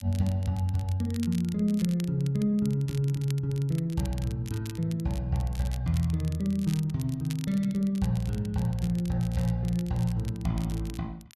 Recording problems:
crackling; vinyl, SNR 19 dB

